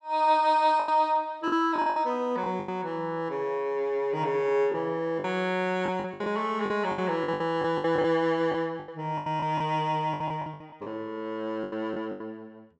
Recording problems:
packet loss; 12% of the sound replaced, filled with the last packet

